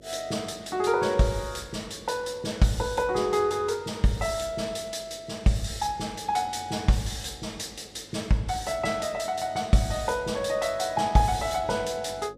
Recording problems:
hum; 50 Hz, harmonics up to 550 Hz, SNR 26 dB

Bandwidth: 14.5 kHz